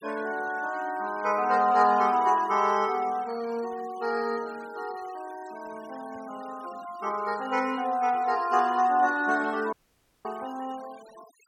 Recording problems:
noise reduction artefacts; signal-to-artefact ratio 22 dB
audio cutting out; at 9.5 s for 0.5 s

